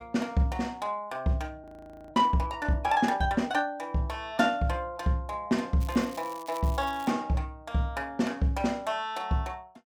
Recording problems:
frozen audio; at 1.5 s
crackling; from 6 to 7 s; loose cable, SNR 20 dB

